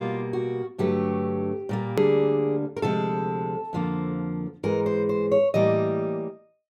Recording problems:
edit click; at 2 s

